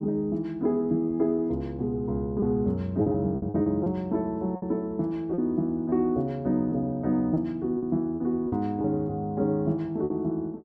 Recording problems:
packet loss; 6% of the sound replaced, filled with repeated pitch periods

